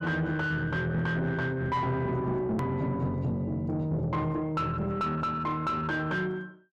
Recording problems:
distortion; soft clipping, signal-to-distortion ratio 9 dB
click at an edit; at 2.5 s

